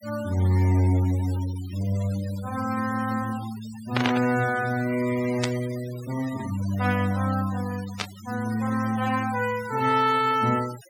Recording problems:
denoising artefacts; signal-to-artefact ratio 16 dB
static burst; at 4 s, at 5.5 s and at 8 s; peak +3 dB vs average level

